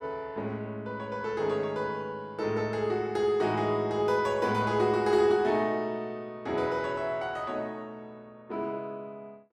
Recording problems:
none

